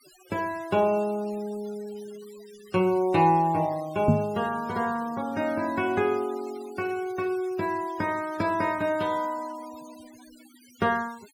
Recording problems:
noise reduction artefacts; signal-to-artefact ratio 22 dB
knock on the microphone; at 4 s; peak +9 dB vs average level

